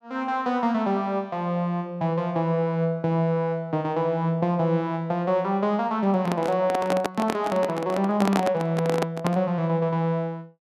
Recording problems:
handling noise; from 6 to 9.5 s; peak +4 dB vs average level

